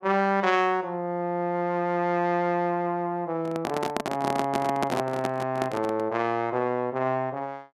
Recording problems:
handling noise; from 3.5 to 6 s; peak +2 dB vs average level

